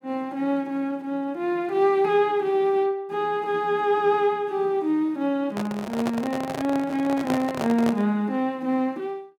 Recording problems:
microphone handling noise; from 5.5 to 8 s; peak -1 dB vs average level

